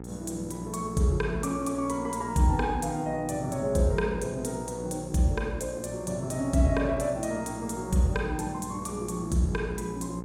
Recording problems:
hum; 60 Hz, harmonics up to 1.4 kHz, SNR 12 dB

